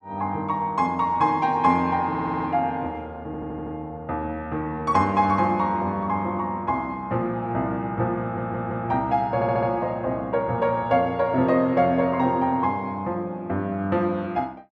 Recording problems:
audio stuttering; 4 times, first at 2 s

